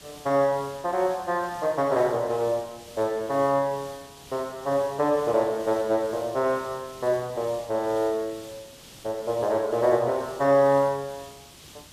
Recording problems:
background hiss; SNR 20 dB

